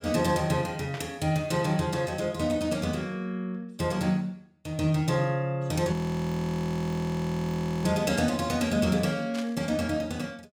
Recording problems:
burst of static; at 1 s and at 9.5 s; peak -7 dB vs average level
audio freezing; at 6 s for 2 s

